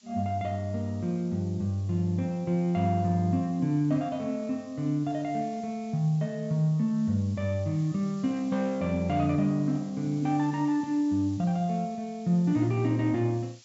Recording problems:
treble missing; nothing above 8 kHz
background hiss; slope +4 dB per octave, SNR 27 dB

